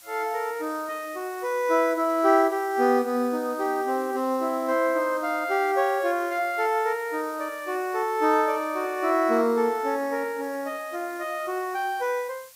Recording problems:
hiss; slope +3 dB per octave, SNR 22 dB

